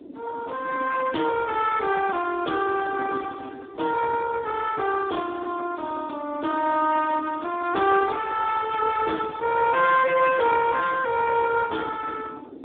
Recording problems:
phone line; 260 Hz to 2.3 kHz, Speex
wind on the microphone; below 380 Hz, SNR 17 dB

